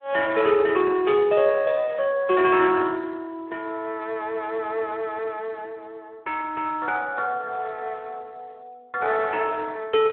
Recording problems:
phone line; 340 Hz to 2.9 kHz, Speex

